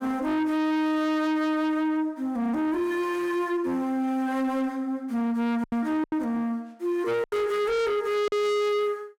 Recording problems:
distortion; soft clipping, signal-to-distortion ratio 8 dB
lost packets; 3% of the sound replaced, filled with silence

